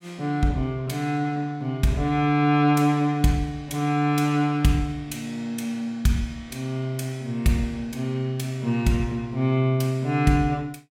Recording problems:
none

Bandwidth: 16.5 kHz